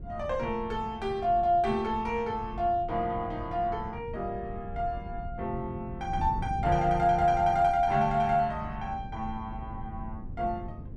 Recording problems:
wind noise; below 140 Hz, SNR 12 dB

